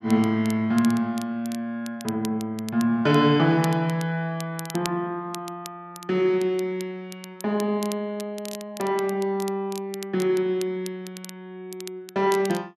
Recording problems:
crackle; vinyl, SNR 17 dB

